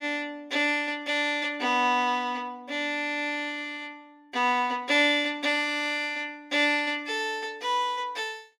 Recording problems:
none

